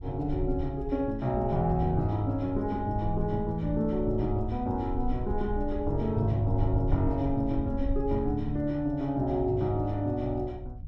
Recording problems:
low-frequency rumble; below 72 Hz, SNR 9 dB

